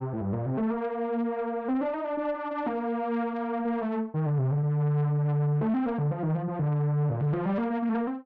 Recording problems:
distorted audio; soft clipping, signal-to-distortion ratio 10 dB

